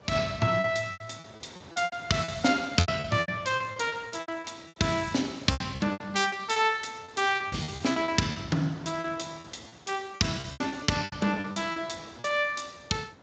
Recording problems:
lossy codec; Speex, log-spectral distance 6 dB, nothing above 7.6 kHz
wind on the microphone; below 1.2 kHz, SNR 22 dB
lost packets; 16% of the sound replaced, filled with repeated pitch periods

